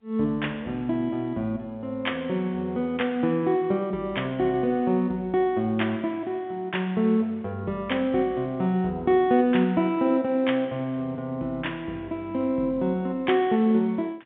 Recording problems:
telephone audio; 150 Hz to 3.6 kHz, G.711

